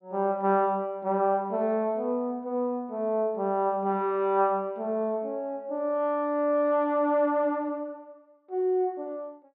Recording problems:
low-pass filter; nothing above 5.1 kHz

